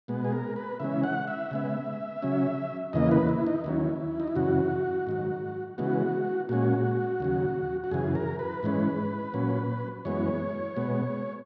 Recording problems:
none

